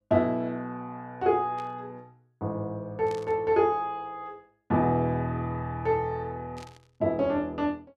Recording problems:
static burst; at 1.5 s, at 3 s and at 6.5 s; peak -14 dB vs average level

